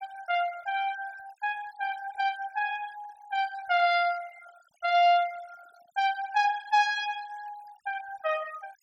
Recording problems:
denoising artefacts; signal-to-artefact ratio 19 dB

